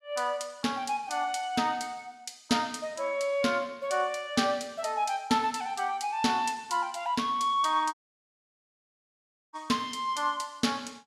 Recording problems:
audio cutting out; at 8 s for 1.5 s

